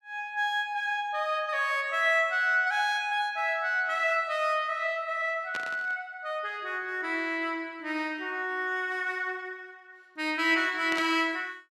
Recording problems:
static burst; at 5.5 s and at 11 s; peak -5 dB vs average level

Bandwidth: 14.5 kHz